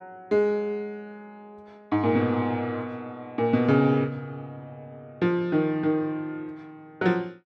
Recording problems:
none

